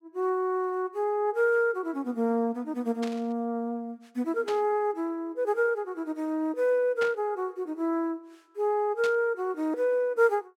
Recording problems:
burst of static; 4 times, first at 3 s; peak -5 dB vs average level

